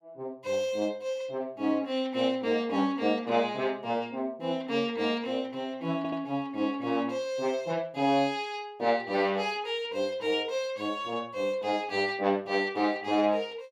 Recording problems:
audio stuttering; at 6 s

